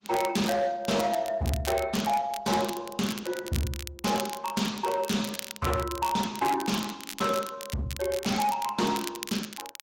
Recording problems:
lossy compression; Opus, log-spectral distance 3 dB, nothing above 16.1 kHz
distorted audio; hard clipping, signal-to-distortion ratio 10 dB
crackle; vinyl, SNR 11 dB

